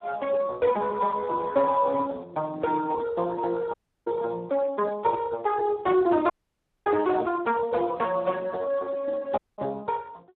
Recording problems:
phone line; 260 Hz to 2 kHz, Speex
dropout; at 3.5 s, at 6.5 s for 0.5 s and at 9.5 s

